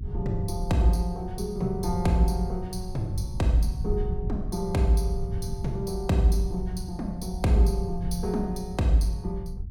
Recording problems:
rumble; below 98 Hz, SNR 7 dB

